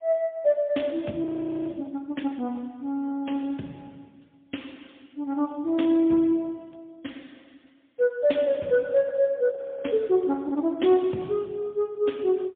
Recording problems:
telephone audio; 150 Hz to 3.5 kHz, AMR-NB, then MP3
frozen audio; at 1.5 s and at 9.5 s

